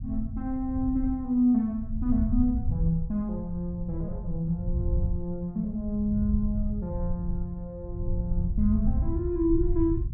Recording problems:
rumble; below 90 Hz, SNR 4 dB

